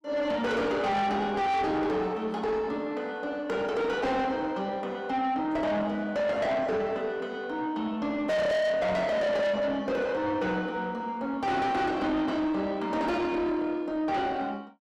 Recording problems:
distorted audio; soft clipping, signal-to-distortion ratio 6 dB

